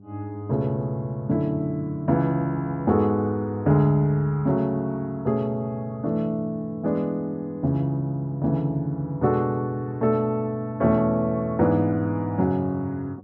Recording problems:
hum; 50 Hz, harmonics up to 500 Hz, SNR 24 dB

